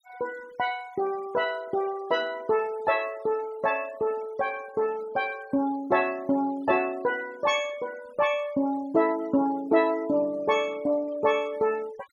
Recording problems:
denoising artefacts; signal-to-artefact ratio 23 dB

